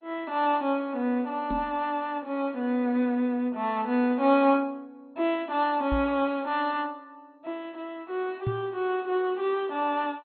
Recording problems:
lossy compression; MP2, log-spectral distance 2 dB, nothing above 3.9 kHz
knock on the microphone; at 1.5 s, at 6 s and at 8.5 s; peak +1 dB vs average level

